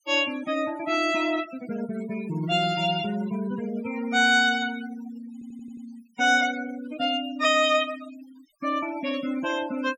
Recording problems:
denoising artefacts; signal-to-artefact ratio 15 dB
audio stuttering; at 5.5 s

